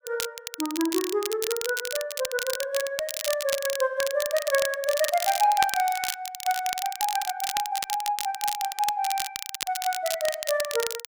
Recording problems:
crackle; vinyl, SNR 5 dB

